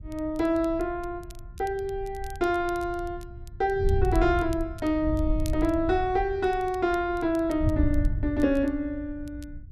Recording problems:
wind noise; below 88 Hz, SNR 7 dB
crackling; vinyl, SNR 25 dB

